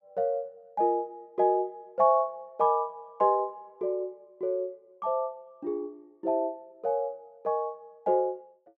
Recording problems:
none

